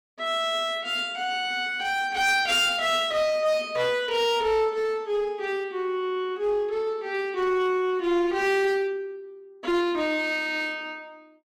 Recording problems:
distortion; hard clipping, uneven, signal-to-distortion ratio 11 dB

